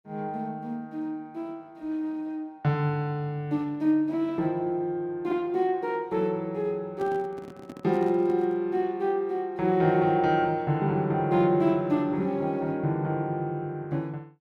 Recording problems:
microphone handling noise; from 7 to 8.5 s; peak -9 dB vs average level

